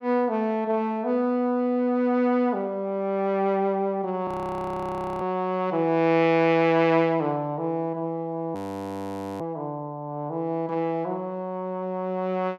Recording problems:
frozen audio; at 4.5 s for 1 s and at 8.5 s for 1 s

